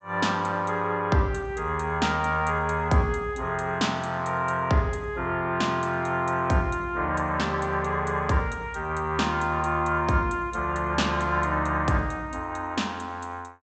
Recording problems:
low-pass filter; nothing above 8 kHz

